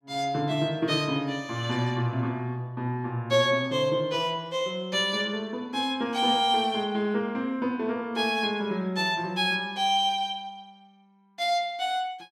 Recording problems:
none

